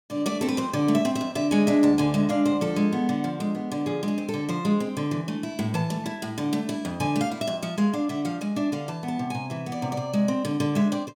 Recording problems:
none

